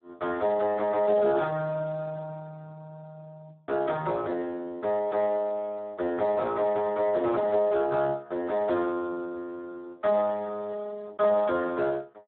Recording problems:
telephone audio; 170 Hz to 2.5 kHz, Speex

